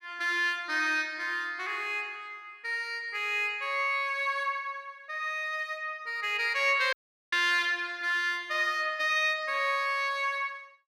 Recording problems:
audio cutting out; at 7 s

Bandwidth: 15 kHz